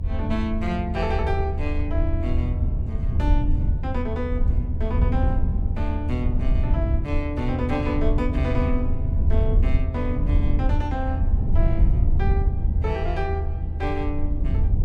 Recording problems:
rumble; below 80 Hz, SNR -5 dB

